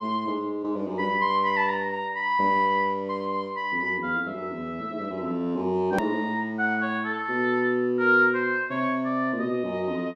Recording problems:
click at an edit; at 6 s

